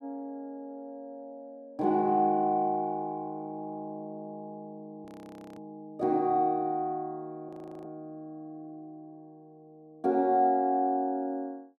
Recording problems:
frozen audio; at 5 s for 0.5 s and at 7.5 s

